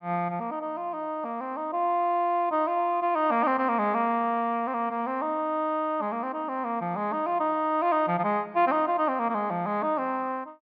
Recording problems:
treble missing; nothing above 5.5 kHz

